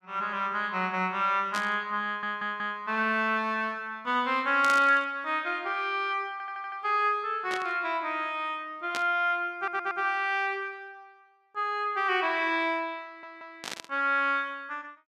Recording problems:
burst of static; 5 times, first at 1.5 s; peak -2 dB vs average level
audio stuttering; 4 times, first at 2 s

